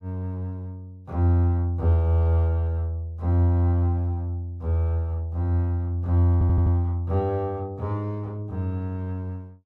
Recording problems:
stutter; at 6.5 s

